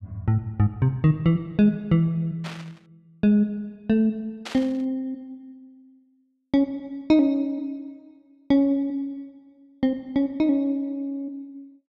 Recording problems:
static burst; at 2.5 s and at 4.5 s; peak -7 dB vs average level

